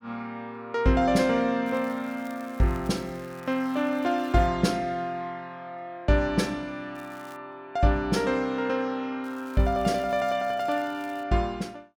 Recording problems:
crackling; from 1.5 to 4.5 s, at 7 s and from 9 to 11 s; loose cable, SNR 27 dB

